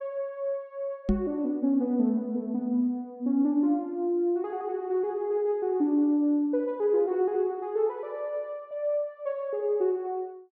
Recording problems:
knock on the microphone; at 1 s; peak +6 dB vs average level

